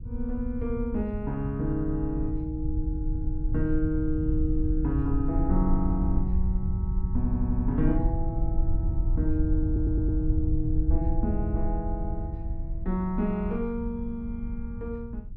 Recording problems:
rumble; below 76 Hz, SNR 0 dB
audio stuttering; at 7 s and at 9.5 s

